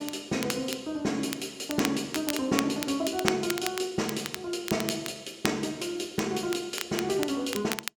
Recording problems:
crackle; vinyl, SNR 7 dB

